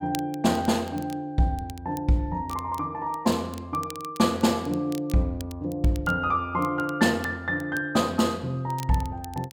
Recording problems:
crackle; vinyl, SNR 21 dB

